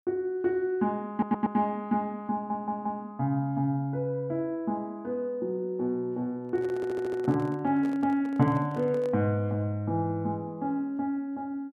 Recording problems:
stutter; at 1 s, at 2.5 s and at 7 s
microphone handling noise; from 6.5 to 9 s; peak -10 dB vs average level

